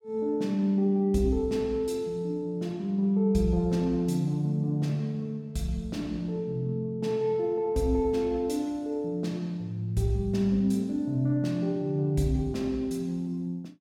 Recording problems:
none

